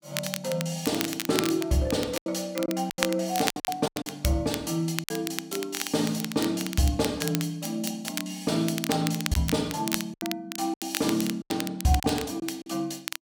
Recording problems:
crackling; vinyl, SNR 7 dB
lost packets; 7% of the sound replaced, filled with silence

